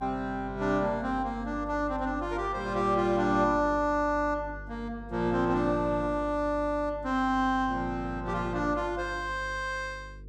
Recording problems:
hum; 50 Hz, harmonics up to 500 Hz, SNR 15 dB

